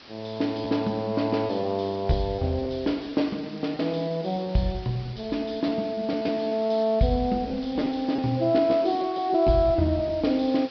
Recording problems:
treble cut off; nothing above 5.5 kHz
hiss; slope -1 dB per octave, SNR 20 dB
packet loss; 7% of the sound replaced, filled with repeated pitch periods

